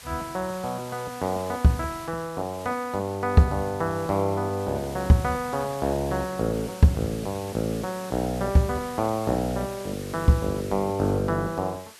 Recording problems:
hiss; slope 0 dB per octave, SNR 17 dB

